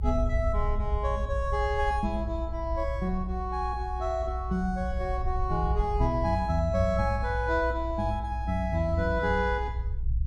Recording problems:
rumble; below 62 Hz, strongest tone 60 Hz, SNR 4 dB

